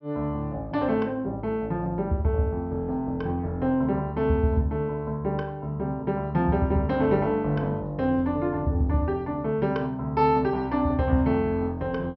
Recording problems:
low-pass filter; nothing above 5.7 kHz

